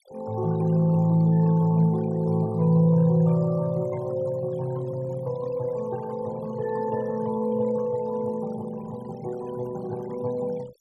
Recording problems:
noise reduction artefacts; signal-to-artefact ratio 24 dB

